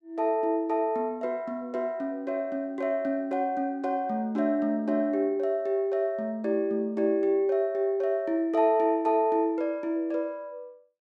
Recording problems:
none

